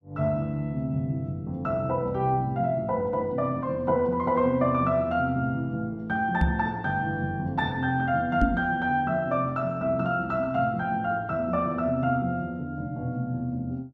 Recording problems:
microphone bump; at 6.5 s and at 8.5 s; peak +7 dB vs average level

